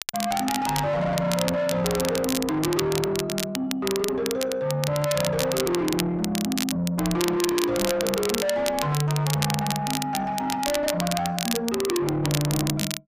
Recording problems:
distorted audio; soft clipping, signal-to-distortion ratio 6 dB
crackle; vinyl, SNR 5 dB

